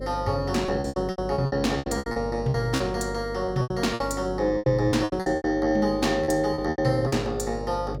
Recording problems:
electrical hum; 50 Hz, harmonics up to 600 Hz, SNR 11 dB
packet loss; 16% of the sound replaced, filled with repeated pitch periods

